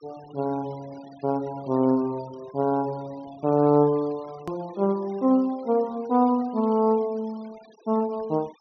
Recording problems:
low-pass filter; nothing above 6 kHz
denoising artefacts; signal-to-artefact ratio 26 dB
hard cut with a click; at 4.5 s

